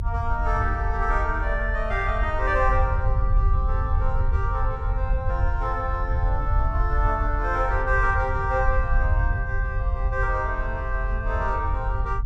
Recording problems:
low-frequency rumble; below 76 Hz, SNR 0 dB

